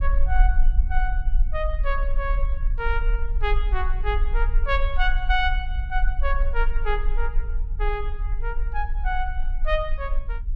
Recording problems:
rumble; below 42 Hz, strongest tone 18 Hz, SNR -3 dB

